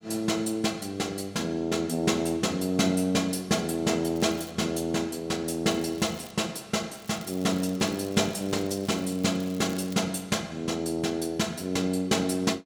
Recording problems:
crackle; at 4 s, at 5.5 s and from 7 to 10 s; loose cable, SNR 20 dB

